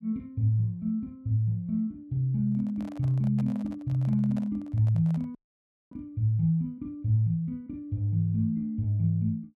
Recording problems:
handling noise; from 2.5 to 6 s; peak -12 dB vs average level
dropout; at 5.5 s for 0.5 s

